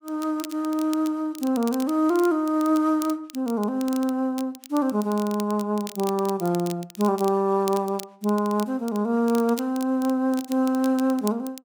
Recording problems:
crackle; vinyl, SNR 18 dB

